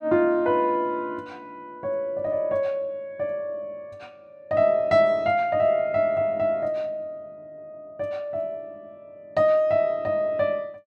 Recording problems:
none

